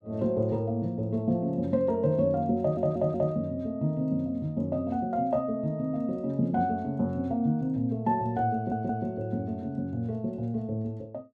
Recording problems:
audio stuttering; at 2.5 s and at 8.5 s

